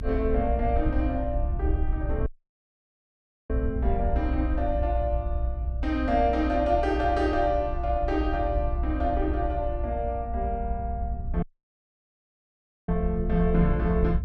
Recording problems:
rumble; below 62 Hz, strongest tone 60 Hz, SNR 2 dB
audio cutting out; at 2.5 s for 1 s and at 11 s for 1.5 s

